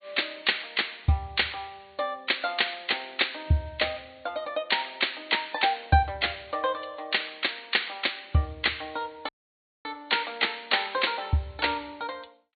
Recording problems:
treble cut off; nothing above 4.5 kHz
lossy compression; MP3, log-spectral distance 5 dB
audio cutting out; at 9.5 s for 0.5 s

